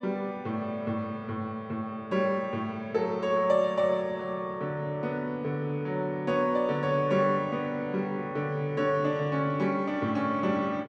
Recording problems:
none

